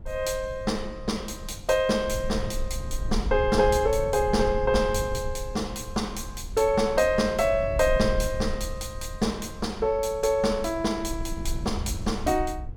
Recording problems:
wind on the microphone; below 80 Hz, SNR 10 dB

